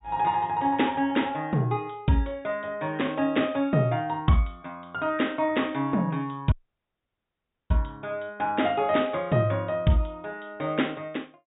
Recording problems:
treble missing; nothing above 4 kHz
dropout; at 6.5 s for 1 s

